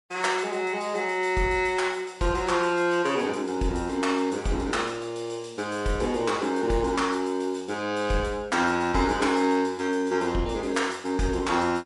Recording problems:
lossy codec; MP3, log-spectral distance 2 dB, nothing above 11 kHz

